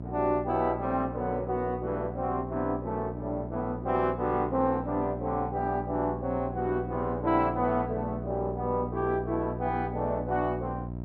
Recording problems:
electrical hum; 60 Hz, harmonics up to 960 Hz, SNR 8 dB

